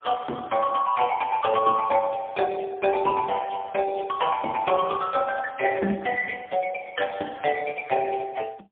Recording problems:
telephone audio; 260 Hz to 2.7 kHz, AMR-NB, then MP3

